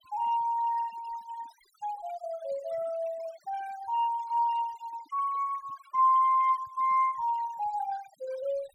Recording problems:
noise reduction artefacts; signal-to-artefact ratio 22 dB

